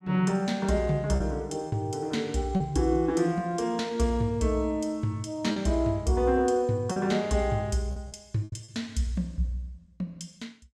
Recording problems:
packet loss; 4% of the sound replaced, filled with repeated pitch periods

